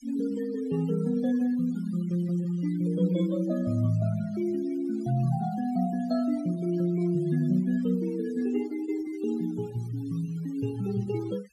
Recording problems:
noise reduction artefacts; signal-to-artefact ratio 20 dB

